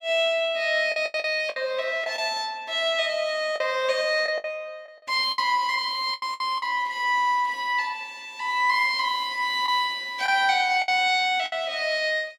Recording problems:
lost packets; 7% of the sound replaced, filled with the last packet

